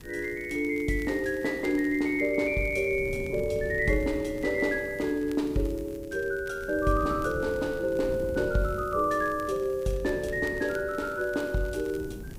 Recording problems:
hiss; slope -1 dB per octave, SNR 27 dB
wind on the microphone; below 240 Hz, SNR 15 dB
crackling; vinyl, SNR 26 dB

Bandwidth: 15.5 kHz